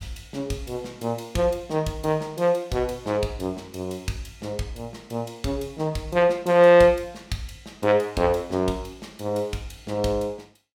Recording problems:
none

